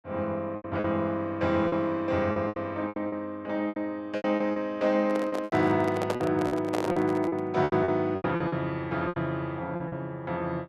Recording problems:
packet loss; 13% of the sound replaced, filled with repeated pitch periods
microphone handling noise; from 5 to 7.5 s; peak +2 dB vs average level

